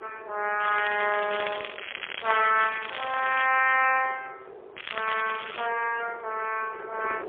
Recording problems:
phone line; 280 Hz to 3.1 kHz, AMR-NB, then MP3
wind noise; below 650 Hz, SNR 19 dB
crackle; from 0.5 to 3.5 s and at 5 s; loose cable, SNR 9 dB

